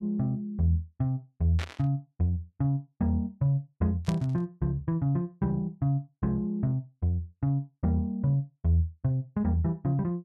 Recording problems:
static burst; at 1.5 s and at 4 s; peak -5 dB vs average level

